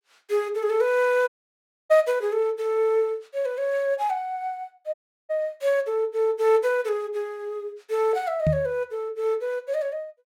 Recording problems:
dropout; at 1.5 s for 0.5 s and at 5 s
microphone thump; at 8.5 s; peak +5 dB vs average level

